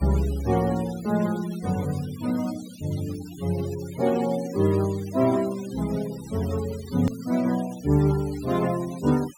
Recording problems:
denoising artefacts; signal-to-artefact ratio 17 dB
hard cut with a click; at 7 s

